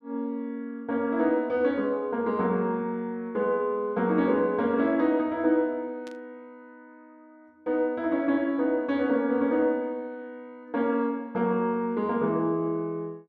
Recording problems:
static burst; at 6 s; peak -17 dB vs average level

